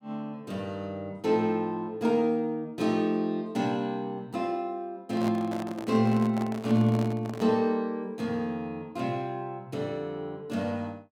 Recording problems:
microphone handling noise; from 5 to 7.5 s; peak -5 dB vs average level

